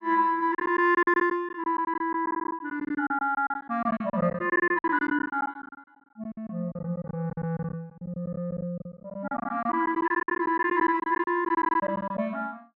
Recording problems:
packet loss; 17% of the sound replaced, filled with silence

